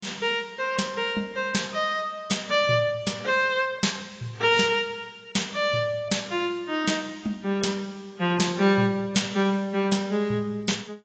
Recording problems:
lossy compression; AAC, log-spectral distance 4 dB, nothing above 7.6 kHz

